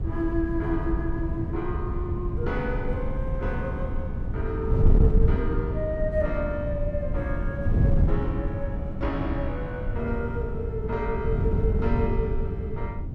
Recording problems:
wind noise; below 120 Hz, SNR -3 dB

